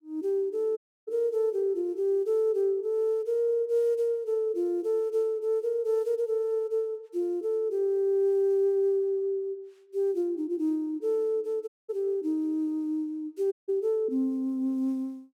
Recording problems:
audio cutting out; at 1 s, at 12 s and at 14 s

